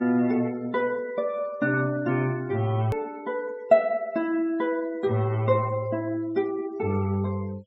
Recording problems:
treble cut off; nothing above 8 kHz
denoising artefacts; signal-to-artefact ratio 25 dB
click at an edit; at 3 s

